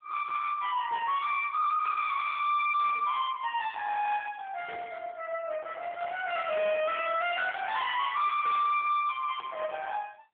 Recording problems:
phone line; 390 Hz to 3.5 kHz, AMR-NB
distorted audio; hard clipping, signal-to-distortion ratio 8 dB

